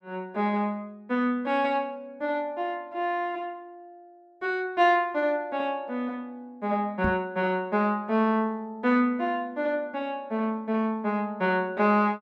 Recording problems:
microphone bump; at 7 s; peak +2 dB vs average level

